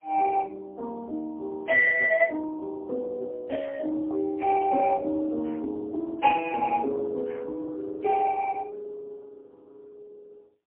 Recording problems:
telephone audio; 240 Hz to 2.5 kHz, AMR-NB, then MP3

